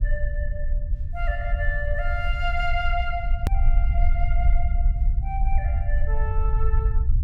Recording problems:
low-frequency rumble; below 58 Hz, SNR -6 dB
edit click; at 3.5 s

